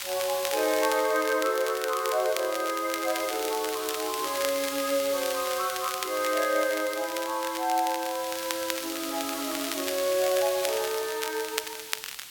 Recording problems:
hiss; slope +3 dB per octave, SNR 7 dB
crackling; vinyl, SNR 8 dB

